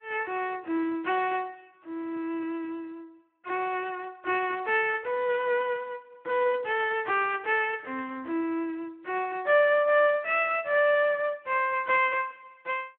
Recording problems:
telephone audio; 280 Hz to 3 kHz, Speex

